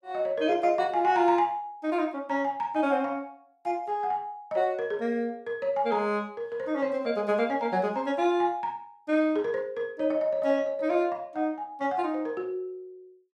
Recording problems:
none

